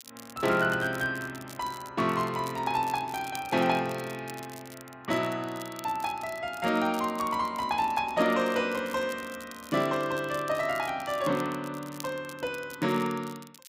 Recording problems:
crackling; vinyl, SNR 18 dB

